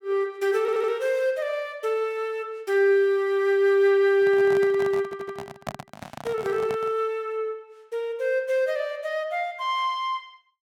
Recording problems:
audio stuttering; at 0.5 s and at 5 s
microphone handling noise; from 4 to 7 s; peak -3 dB vs average level

